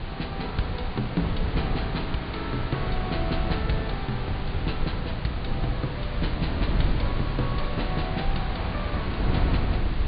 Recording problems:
low-pass filter; nothing above 4.7 kHz
hiss; SNR 6 dB
wind on the microphone; below 140 Hz, SNR -1 dB

